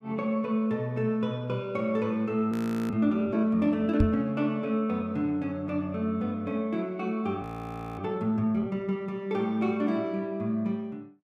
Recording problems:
frozen audio; at 2.5 s and at 7.5 s for 0.5 s
microphone bump; at 4 s; peak +7 dB vs average level

